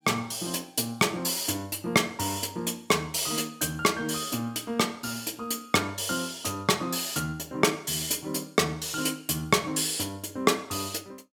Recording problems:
none

